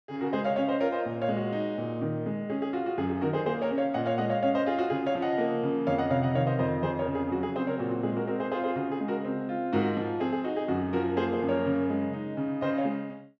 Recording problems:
none

